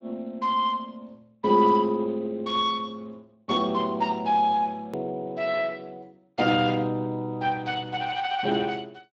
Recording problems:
lossy compression; Speex, log-spectral distance 3 dB
hard cut with a click; at 5 s

